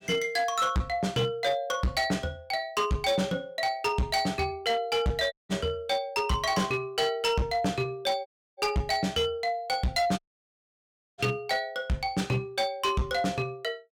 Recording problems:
distorted audio; hard clipping, uneven, signal-to-distortion ratio 11 dB
dropout; at 5.5 s, at 8.5 s and at 10 s for 1 s

